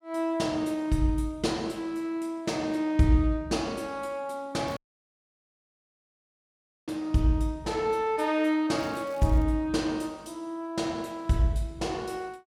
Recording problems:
crackle; at 4.5 s and at 9 s; loose cable, SNR 27 dB
audio cutting out; at 5 s for 2 s

